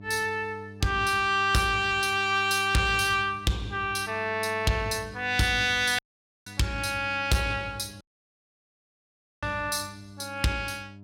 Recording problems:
distorted audio; soft clipping, signal-to-distortion ratio 11 dB
hum; 50 Hz, harmonics up to 700 Hz, SNR 19 dB
audio cutting out; at 6 s and at 8 s for 1.5 s

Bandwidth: 16.5 kHz